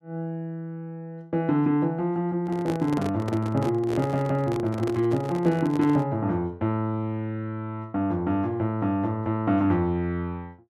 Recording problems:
microphone handling noise; from 2.5 to 6 s; peak -3 dB vs average level

